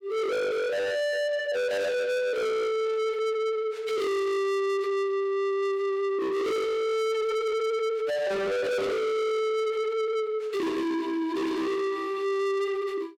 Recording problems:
distorted audio; soft clipping, signal-to-distortion ratio 6 dB

